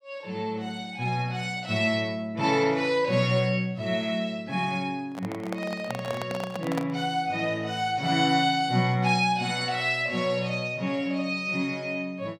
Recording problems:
handling noise; from 5 to 7 s; peak -1 dB vs average level

